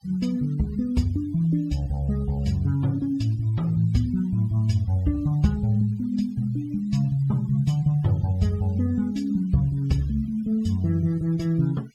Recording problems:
denoising artefacts; signal-to-artefact ratio 27 dB

